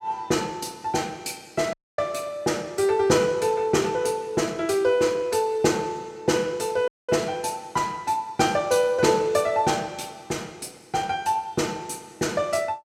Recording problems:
audio cutting out; at 1.5 s and at 7 s

